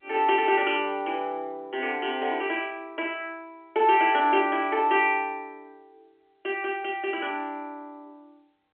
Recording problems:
telephone audio; 320 Hz to 3.2 kHz, G.711

